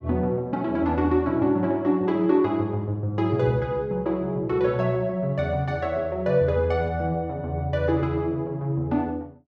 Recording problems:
none

